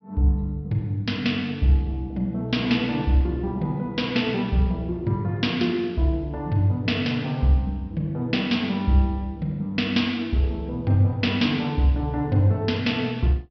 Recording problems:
low-pass filter; nothing above 5.5 kHz

